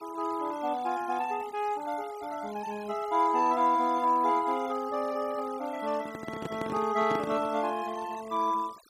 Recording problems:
noise reduction artefacts; signal-to-artefact ratio 21 dB
microphone handling noise; from 6 to 7.5 s; peak -2 dB vs average level

